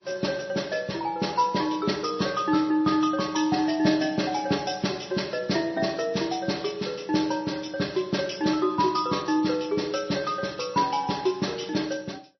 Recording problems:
codec artefacts; MP3, log-spectral distance 6 dB, nothing above 5.8 kHz

